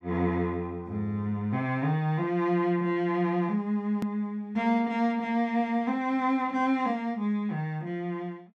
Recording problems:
click at an edit; at 4 s

